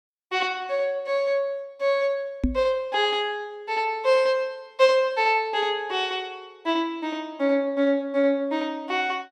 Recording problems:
knock on the microphone; at 2.5 s; peak +5 dB vs average level

